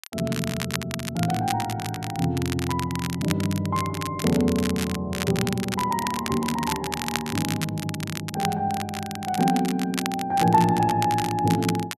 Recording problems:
crackle; vinyl, SNR 8 dB

